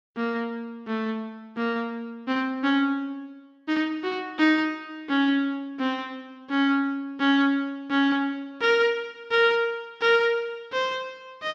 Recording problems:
none

